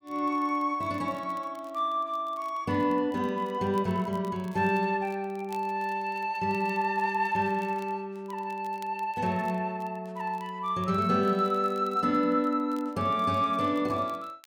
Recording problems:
crackling; vinyl, SNR 29 dB

